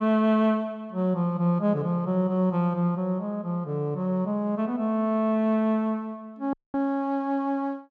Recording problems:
dropout; at 6.5 s

